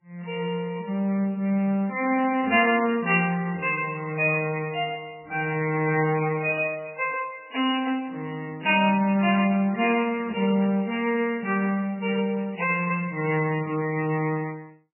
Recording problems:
lossy compression; MP3, then MP3, log-spectral distance 4 dB, nothing above 2.6 kHz

